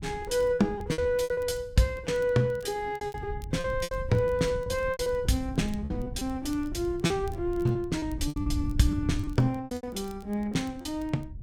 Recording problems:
wind on the microphone; below 110 Hz, SNR 10 dB
crackling; vinyl, SNR 30 dB
lost packets; 12% of the sound replaced, filled with repeated pitch periods

